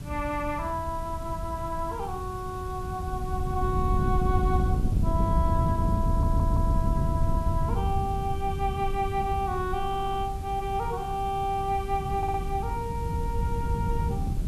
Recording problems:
hiss; slope -3 dB per octave, SNR 19 dB
wind noise; below 130 Hz, SNR -1 dB
audio stuttering; at 6 s, at 10 s and at 12 s

